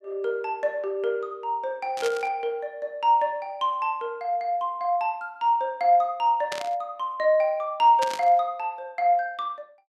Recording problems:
static burst; at 2 s, at 6.5 s and at 8 s; peak -3 dB vs average level

